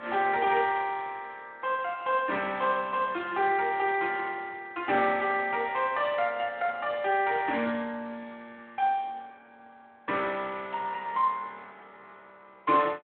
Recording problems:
phone line; 280 Hz to 3.6 kHz, Speex

